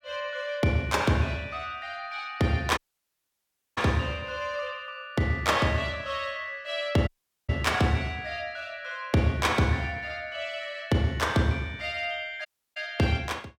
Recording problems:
audio cutting out; at 3 s for 1 s, at 7 s and at 12 s

